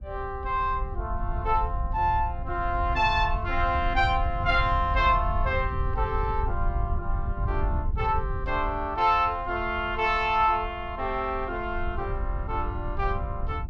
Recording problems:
wind noise; below 80 Hz, SNR 6 dB

